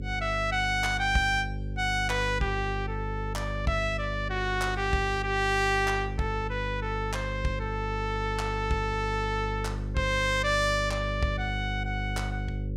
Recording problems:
mains hum; 50 Hz, harmonics up to 550 Hz, SNR 6 dB

